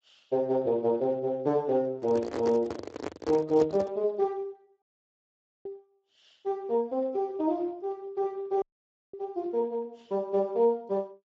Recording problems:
lossy codec; Speex, log-spectral distance 2 dB
handling noise; from 2 to 4 s; peak +1 dB vs average level
dropout; at 5 s for 1 s and at 8.5 s for 0.5 s

